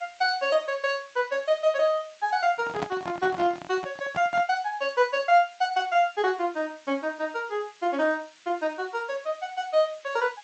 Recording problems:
lossy codec; MP3, then G.722, log-spectral distance 5 dB, nothing above 7.6 kHz
background hiss; SNR 27 dB
microphone handling noise; from 2.5 to 4.5 s; peak -1 dB vs average level

